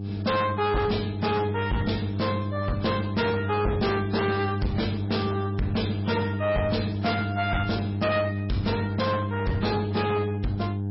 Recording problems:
codec artefacts; MP3, log-spectral distance 4 dB, nothing above 5.5 kHz
distorted audio; hard clipping, signal-to-distortion ratio 8 dB
electrical hum; 50 Hz, harmonics up to 700 Hz, SNR 3 dB

